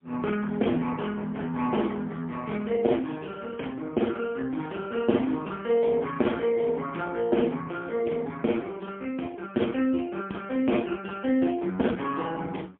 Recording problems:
telephone audio; 190 Hz to 3.3 kHz, AMR-NB, then MP3

